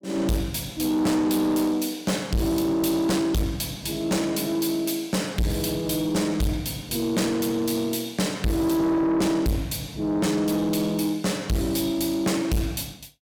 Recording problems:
distortion; soft clipping, signal-to-distortion ratio 6 dB

